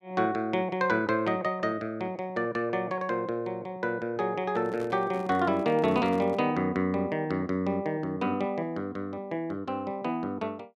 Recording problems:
microphone handling noise; from 4.5 to 6.5 s; peak -7 dB vs average level

